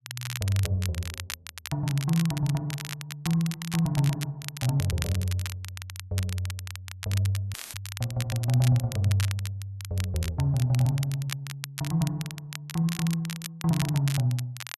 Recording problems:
crackle; vinyl, SNR 10 dB
dropout; at 7.5 s; filled with static

